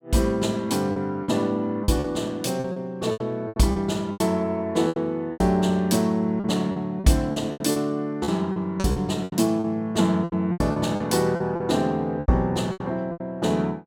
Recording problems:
lost packets; 13% of the sound replaced, filled with repeated pitch periods

